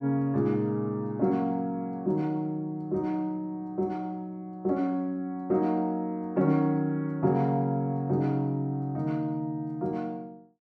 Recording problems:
none

